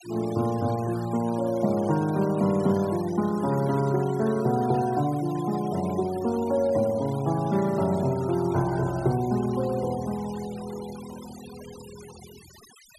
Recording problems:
noise reduction artefacts; signal-to-artefact ratio 20 dB

